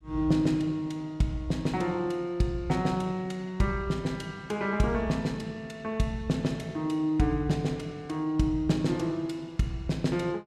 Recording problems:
none

